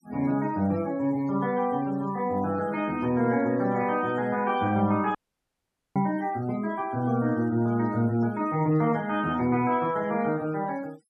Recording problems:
noise reduction artefacts; signal-to-artefact ratio 25 dB
dropout; at 5 s for 1 s

